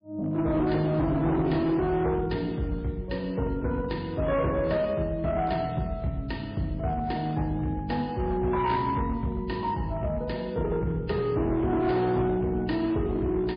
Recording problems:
lossy compression; MP3, log-spectral distance 2 dB, nothing above 4.2 kHz
distorted audio; hard clipping, uneven, signal-to-distortion ratio 12 dB

